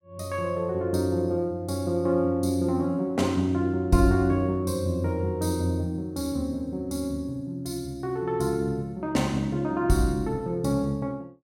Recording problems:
none

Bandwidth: 16.5 kHz